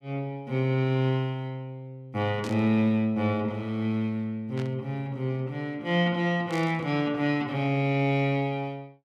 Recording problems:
static burst; at 2.5 s, at 4.5 s and at 6.5 s; peak -10 dB vs average level

